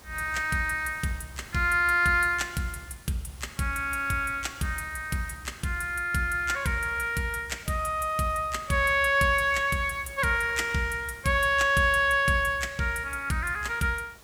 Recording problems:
hiss; slope -3 dB per octave, SNR 25 dB

